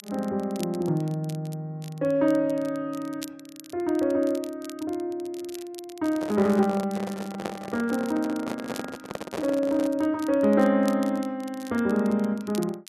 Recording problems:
crackling; vinyl, SNR 21 dB
microphone handling noise; from 6 to 10 s; peak -1 dB vs average level

